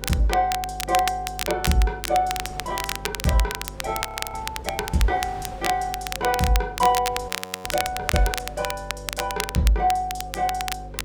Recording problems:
electrical hum; 50 Hz, harmonics up to 550 Hz, SNR 15 dB
wind on the microphone; below 1.1 kHz, SNR 22 dB
crackling; vinyl, SNR 6 dB
audio freezing; at 4 s and at 7.5 s

